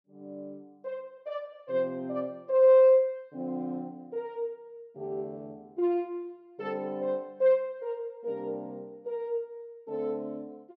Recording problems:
none

